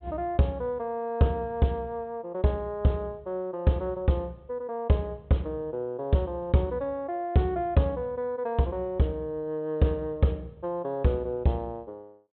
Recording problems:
low-pass filter; nothing above 4 kHz

